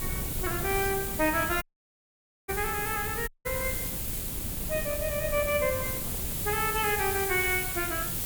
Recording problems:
hiss; SNR 2 dB
wind on the microphone; below 220 Hz, SNR 9 dB
dropout; at 1.5 s for 1 s and at 3.5 s

